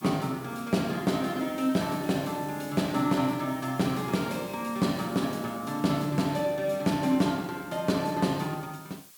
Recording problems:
background hiss; slope +2 dB per octave, SNR 20 dB

